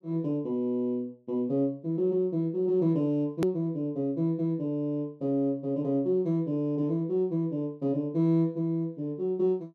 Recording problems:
click at an edit; at 3.5 s

